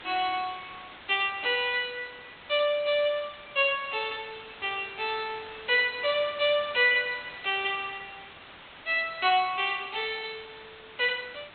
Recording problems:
treble missing; nothing above 4 kHz
hiss; SNR 18 dB

